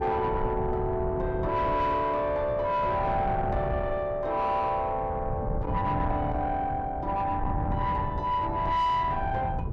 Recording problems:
distortion; soft clipping, signal-to-distortion ratio 11 dB
wind on the microphone; below 200 Hz, SNR 6 dB

